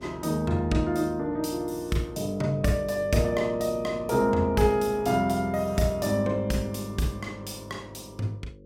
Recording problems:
hum; 50 Hz, harmonics up to 550 Hz, SNR 20 dB

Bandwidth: 18 kHz